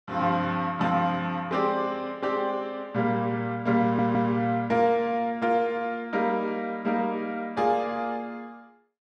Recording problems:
audio stuttering; at 4 s

